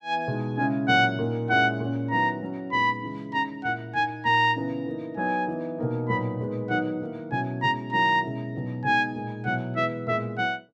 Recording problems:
none

